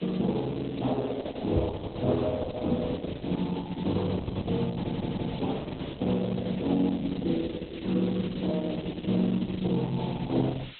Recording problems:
lossy codec; Opus, log-spectral distance 9 dB, nothing above 3.9 kHz
background hiss; SNR 18 dB
knock on the microphone; at 1.5 s; peak +4 dB vs average level
stutter; at 5 s

